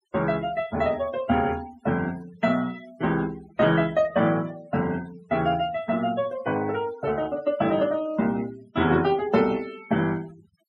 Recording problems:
denoising artefacts; signal-to-artefact ratio 20 dB

